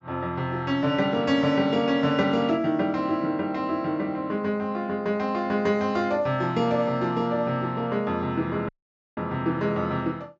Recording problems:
treble cut off; nothing above 8 kHz
dropout; at 8.5 s

